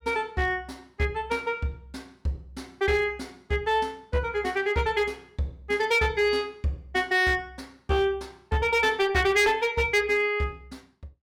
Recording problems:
distortion; hard clipping, uneven, signal-to-distortion ratio 11 dB

